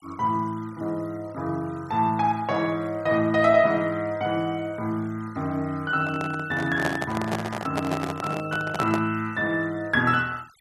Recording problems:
noise reduction artefacts; signal-to-artefact ratio 25 dB
microphone handling noise; from 6 to 9 s; peak +2 dB vs average level

